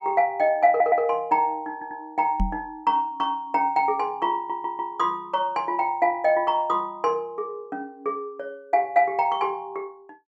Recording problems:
stutter; at 0.5 s, at 1.5 s and at 4.5 s
knock on the microphone; at 2.5 s; peak +2 dB vs average level

